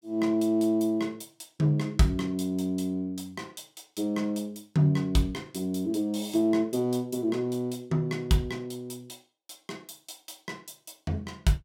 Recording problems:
none

